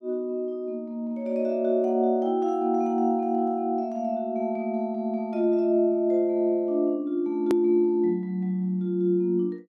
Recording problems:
click at an edit; at 7.5 s

